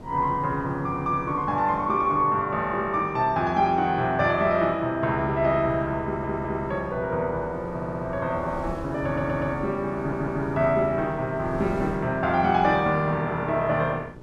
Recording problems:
hum; 60 Hz, harmonics up to 2 kHz, SNR 23 dB
wind noise; below 460 Hz, SNR 18 dB
stutter; 4 times, first at 6 s

